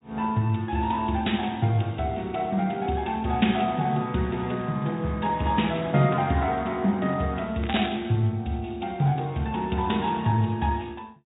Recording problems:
low-pass filter; nothing above 3.8 kHz
codec artefacts; Speex, log-spectral distance 5 dB
crackle; at 7.5 s; loose cable, SNR 12 dB

